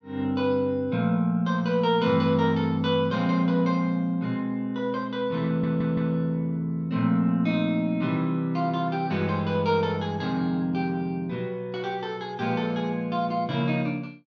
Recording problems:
audio stuttering; at 5.5 s

